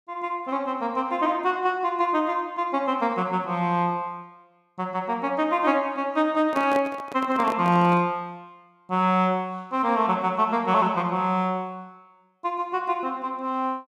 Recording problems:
microphone handling noise; from 6.5 to 8 s; peak -4 dB vs average level

